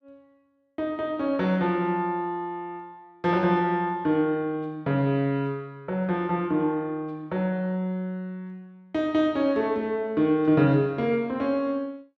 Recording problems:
none

